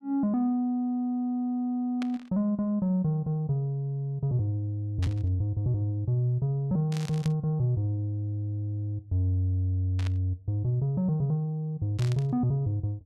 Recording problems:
static burst; 5 times, first at 2 s; peak -8 dB vs average level

